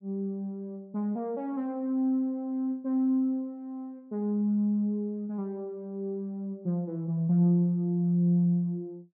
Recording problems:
none

